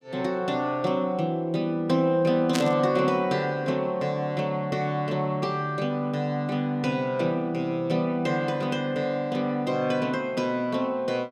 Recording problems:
burst of static; at 2.5 s; peak +1 dB vs average level

